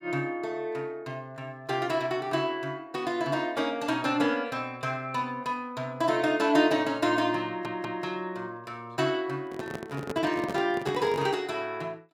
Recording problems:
stutter; at 7.5 s
handling noise; from 9.5 to 11 s; peak -1 dB vs average level

